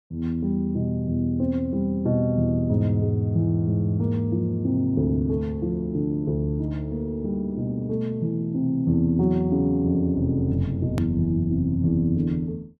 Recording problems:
hard cut with a click; at 11 s

